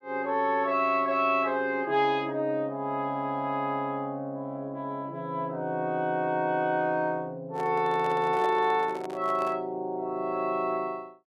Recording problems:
handling noise; from 7.5 to 9.5 s; peak -5 dB vs average level

